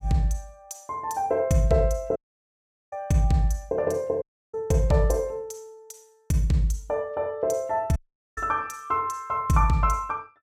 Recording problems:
audio cutting out; at 2 s for 1 s, at 4 s and at 8 s

